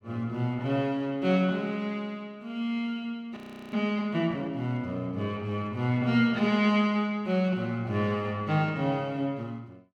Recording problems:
frozen audio; at 3.5 s

